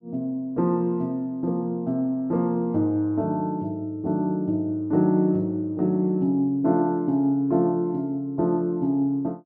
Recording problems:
none

